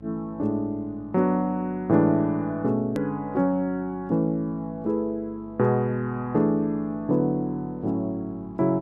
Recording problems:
hum; 50 Hz, harmonics up to 1.1 kHz, SNR 23 dB
hard cut with a click; at 3 s

